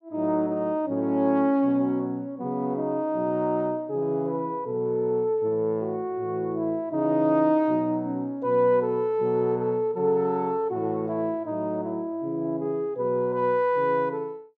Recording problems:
none

